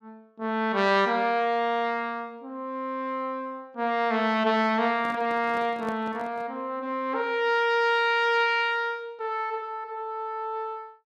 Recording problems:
handling noise; from 5 to 6.5 s; peak -9 dB vs average level

